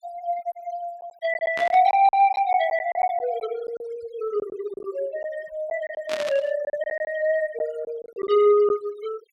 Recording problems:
noise reduction artefacts; signal-to-artefact ratio 18 dB
lost packets; 8% of the sound replaced, filled with silence
static burst; at 1.5 s and at 6 s; peak -4 dB vs average level

